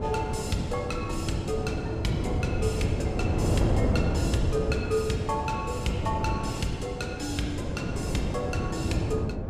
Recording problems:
wind noise; below 330 Hz, SNR -2 dB

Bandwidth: 15.5 kHz